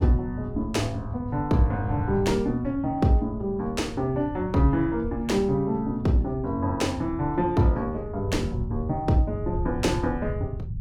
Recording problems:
rumble; below 130 Hz, SNR 10 dB

